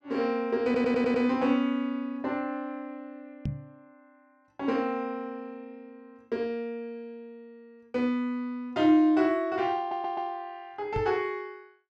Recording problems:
stutter; at 0.5 s and at 10 s
knock on the microphone; at 3.5 s and at 11 s; peak 0 dB vs average level

